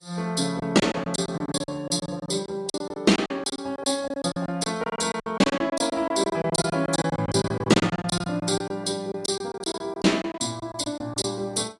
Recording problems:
lossy codec; AAC, log-spectral distance 4 dB, nothing above 10.4 kHz
lost packets; 17% of the sound replaced, filled with silence

